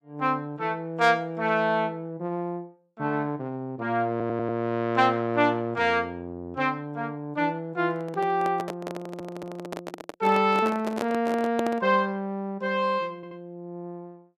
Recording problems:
stutter; at 4 s, at 9 s and at 13 s
handling noise; from 8 to 12 s; peak 0 dB vs average level

